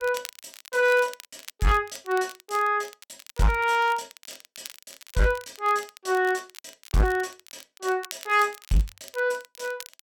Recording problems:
distortion; hard clipping, signal-to-distortion ratio 10 dB
crackling; vinyl, SNR 19 dB

